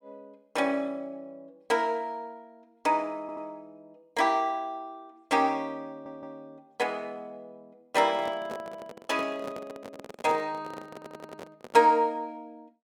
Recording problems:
audio stuttering; at 3 s, at 6 s and at 11 s
microphone handling noise; from 8 to 12 s; peak -4 dB vs average level

